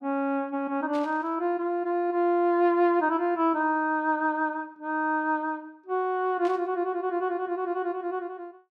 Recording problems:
static burst; at 1 s and at 6.5 s; peak -13 dB vs average level

